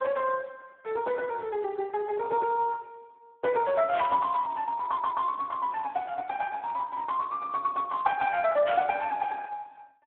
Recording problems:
phone line; 150 Hz to 3.7 kHz, Speex
burst of static; at 4 s and at 8.5 s; peak -3 dB vs average level
audio stuttering; at 5 s

